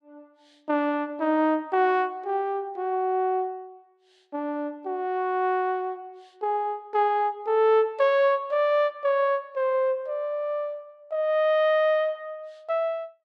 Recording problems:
none

